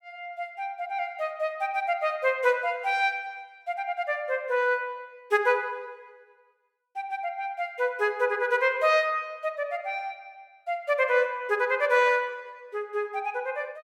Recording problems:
none

